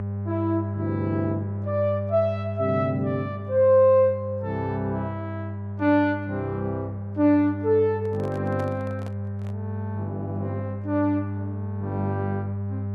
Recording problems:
hum; 50 Hz, harmonics up to 800 Hz, SNR 7 dB
handling noise; from 8 to 9.5 s; peak -11 dB vs average level

